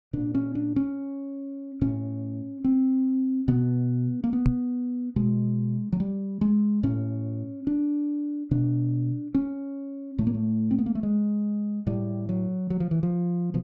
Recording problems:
microphone thump; at 4.5 s; peak +7 dB vs average level

